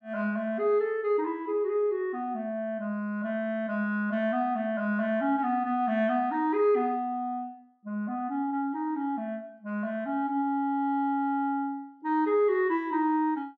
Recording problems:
none

